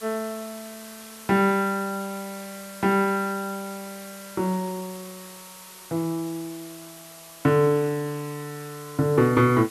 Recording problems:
background hiss; SNR 17 dB

